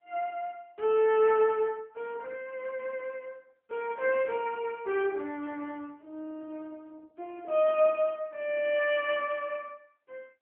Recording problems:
telephone audio; 300 Hz to 3.7 kHz, AMR-NB

